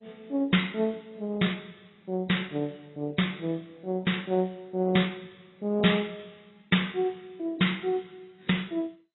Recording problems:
lossy compression; AAC, then MP2, log-spectral distance 7 dB, nothing above 3.8 kHz

